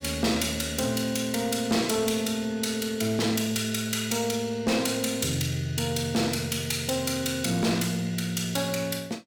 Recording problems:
distorted audio; soft clipping, signal-to-distortion ratio 12 dB

